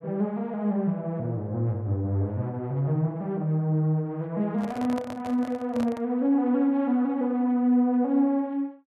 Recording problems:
handling noise; from 4.5 to 6 s; peak -7 dB vs average level

